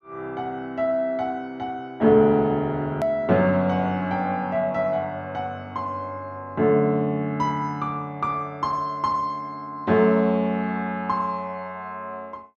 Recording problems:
hard cut with a click; at 3 s

